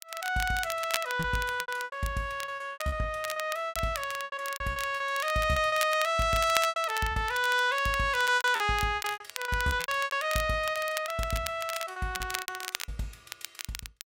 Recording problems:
crackle; vinyl, SNR 10 dB
lost packets; 15% of the sound replaced, filled with repeated pitch periods

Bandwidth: 16 kHz